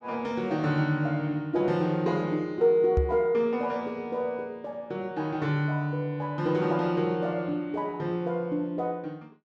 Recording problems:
knock on the microphone; at 3 s; peak +5 dB vs average level

